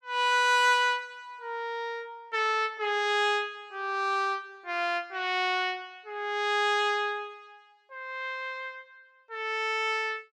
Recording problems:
none

